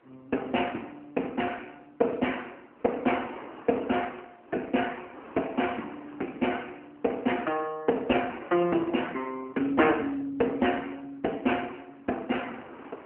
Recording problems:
telephone audio; 220 Hz to 3 kHz, AMR-NB
wind on the microphone; below 1.2 kHz, SNR 19 dB

